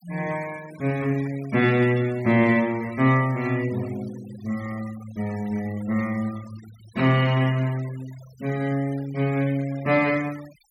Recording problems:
denoising artefacts; signal-to-artefact ratio 21 dB

